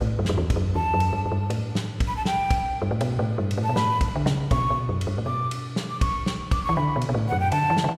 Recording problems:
none

